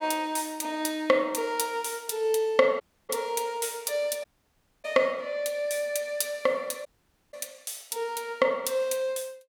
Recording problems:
audio cutting out; at 3 s, at 4 s for 0.5 s and at 7 s

